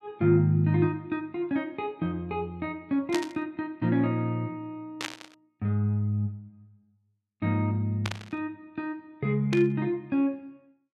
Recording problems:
burst of static; 4 times, first at 3 s; peak 0 dB vs average level

